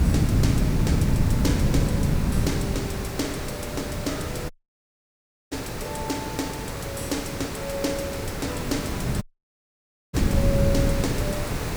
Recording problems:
hiss; slope -5 dB per octave, SNR 2 dB
wind on the microphone; below 190 Hz, SNR -6 dB
dropout; at 4.5 s for 1 s and at 9 s for 1 s

